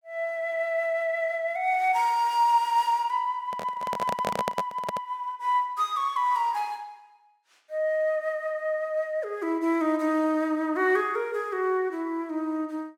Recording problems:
handling noise; from 3.5 to 5 s; peak +2 dB vs average level

